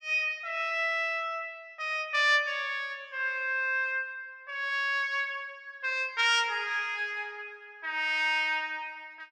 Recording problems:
none

